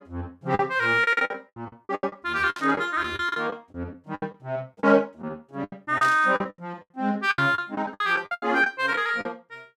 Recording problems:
lost packets; 17% of the sound replaced, filled with the last packet
static burst; at 2.5 s and at 6 s; peak -8 dB vs average level

